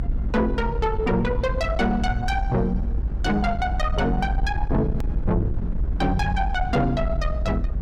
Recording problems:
distorted audio; soft clipping, signal-to-distortion ratio 11 dB
low-frequency rumble; below 72 Hz, SNR 3 dB
edit click; at 5 s

